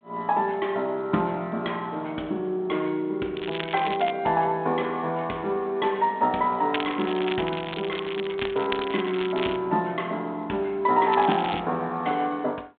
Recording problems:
phone line; 220 Hz to 3.7 kHz, G.726
crackle; at 3.5 s, from 6.5 to 9.5 s and at 11 s; loose cable, SNR 9 dB

